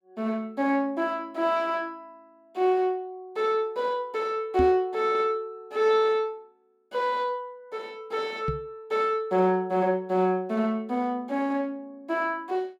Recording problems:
knock on the microphone; at 4.5 s and at 8.5 s; peak +1 dB vs average level

